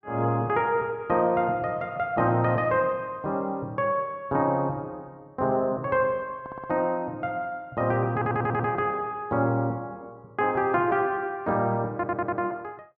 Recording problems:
audio stuttering; at 6.5 s, at 8 s and at 12 s

